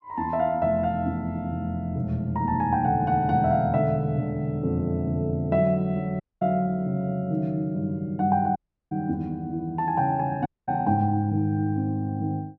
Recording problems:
audio cutting out; at 6 s, at 8.5 s and at 10 s

